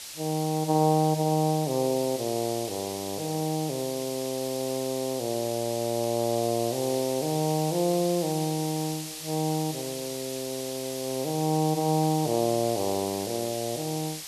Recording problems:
hiss; SNR 8 dB

